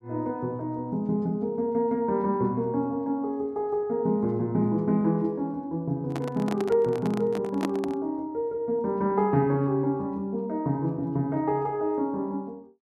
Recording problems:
microphone handling noise; from 6 to 8 s; peak 0 dB vs average level

